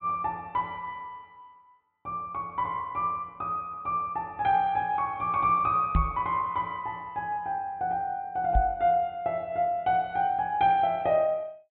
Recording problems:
treble cut off; nothing above 4 kHz
knock on the microphone; at 6 s and at 8.5 s; peak +6 dB vs average level

